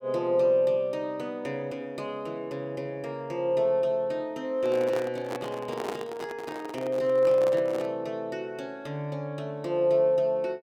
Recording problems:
handling noise; from 4.5 to 8 s; peak -2 dB vs average level

